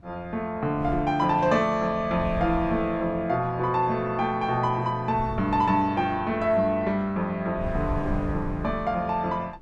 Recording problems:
wind on the microphone; below 120 Hz, SNR 12 dB

